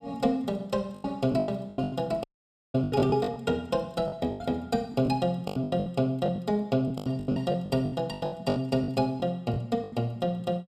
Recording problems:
lost packets; 16% of the sound replaced, filled with the last packet
dropout; at 2 s for 0.5 s

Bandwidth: 15.5 kHz